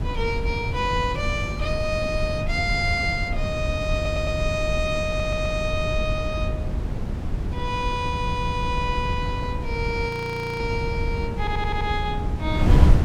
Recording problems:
wind noise; below 140 Hz, SNR 1 dB
stutter; 4 times, first at 4 s
frozen audio; at 10 s for 0.5 s

